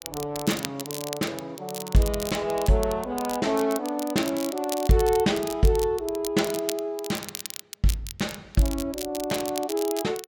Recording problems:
crackling; vinyl, SNR 10 dB

